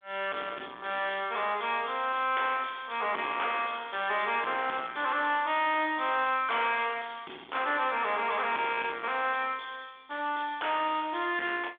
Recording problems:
phone line; 260 Hz to 3.6 kHz, G.726
distorted audio; soft clipping, signal-to-distortion ratio 10 dB

